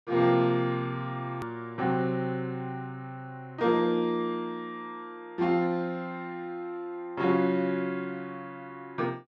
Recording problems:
edit click; at 1.5 s

